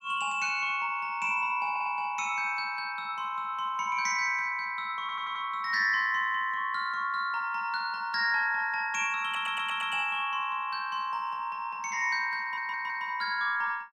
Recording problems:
stutter; 4 times, first at 1.5 s

